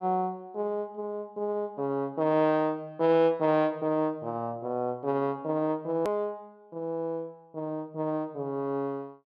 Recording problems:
click at an edit; at 6 s

